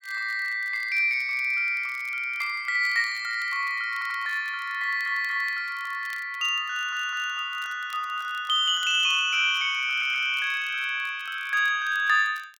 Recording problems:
crackle; vinyl, SNR 28 dB
stutter; 4 times, first at 4 s

